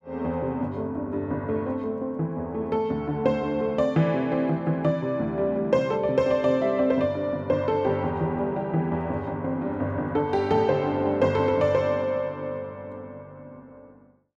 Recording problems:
none

